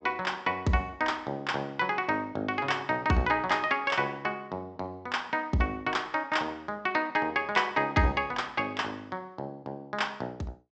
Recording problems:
treble missing; nothing above 8 kHz

